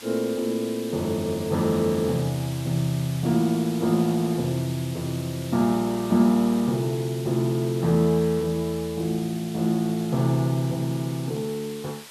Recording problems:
hiss; slope +1 dB per octave, SNR 16 dB

